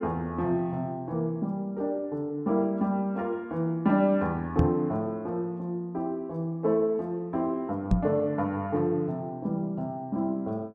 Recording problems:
microphone bump; at 4.5 s and at 8 s; peak +8 dB vs average level

